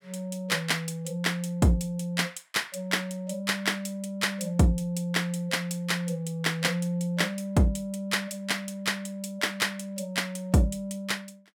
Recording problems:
none

